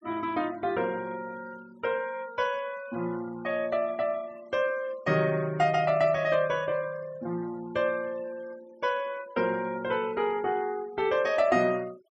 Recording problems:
denoising artefacts; signal-to-artefact ratio 23 dB

